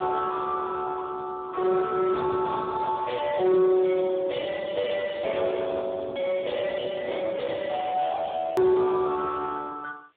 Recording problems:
phone line; 300 Hz to 2.2 kHz, Speex
distortion; soft clipping, signal-to-distortion ratio 7 dB
background hiss; SNR 43 dB
hard cut with a click; at 8.5 s

